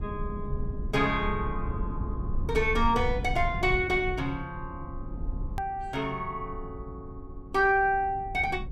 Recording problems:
rumble; below 100 Hz, SNR 9 dB
click at an edit; at 5.5 s

